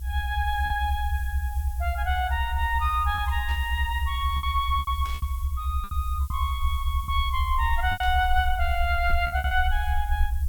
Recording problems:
hiss; slope +6 dB per octave, SNR 19 dB
rumble; below 72 Hz, SNR 1 dB
lost packets; 7% of the sound replaced, filled with repeated pitch periods
static burst; at 3.5 s, at 5 s and at 8 s; peak -12 dB vs average level

